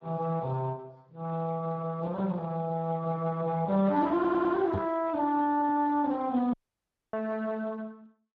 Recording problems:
lossy codec; Speex, log-spectral distance 2 dB
stutter; at 4 s
microphone thump; at 4.5 s; peak -2 dB vs average level
dropout; at 6.5 s for 0.5 s

